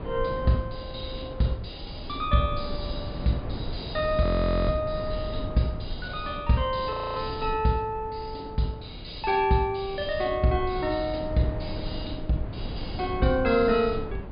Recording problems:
treble cut off; nothing above 4.9 kHz
rumble; below 240 Hz, SNR 9 dB
frozen audio; at 4 s and at 7 s

